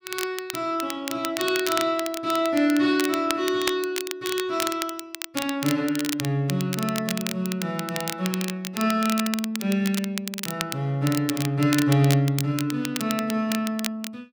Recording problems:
crackling; vinyl, SNR 7 dB

